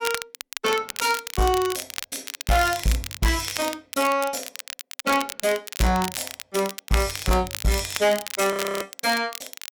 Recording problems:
distortion; soft clipping, signal-to-distortion ratio 10 dB
crackling; vinyl, SNR 9 dB
audio freezing; at 8.5 s

